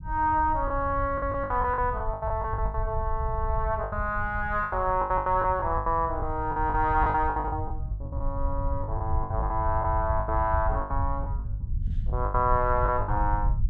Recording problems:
low-frequency rumble; below 88 Hz, SNR 5 dB
lost packets; 15% of the sound replaced, filled with the last packet

